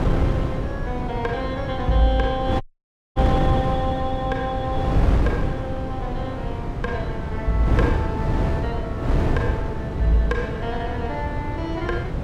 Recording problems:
wind noise; below 280 Hz, SNR -1 dB
audio cutting out; at 2.5 s for 0.5 s

